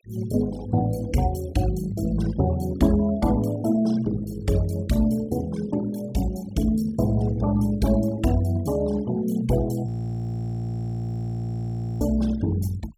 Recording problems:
noise reduction artefacts; signal-to-artefact ratio 18 dB
audio freezing; at 10 s for 2 s

